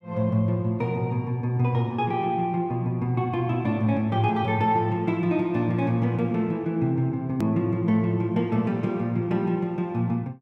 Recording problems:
click at an edit; at 7.5 s

